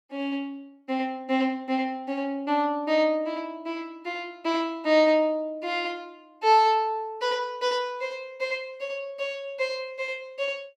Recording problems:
none

